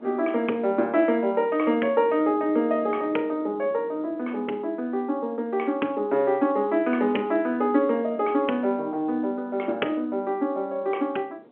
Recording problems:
telephone audio; 260 Hz to 3.4 kHz, G.711
wind on the microphone; below 520 Hz, SNR 22 dB

